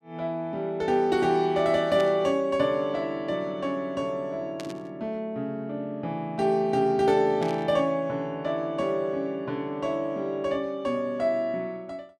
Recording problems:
burst of static; at 2 s, at 4.5 s and at 7.5 s; peak -9 dB vs average level

